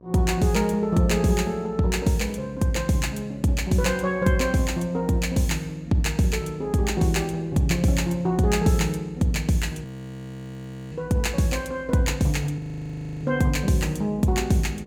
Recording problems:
electrical hum; 60 Hz, harmonics up to 1.2 kHz, SNR 28 dB
audio freezing; at 10 s for 1 s and at 13 s for 0.5 s

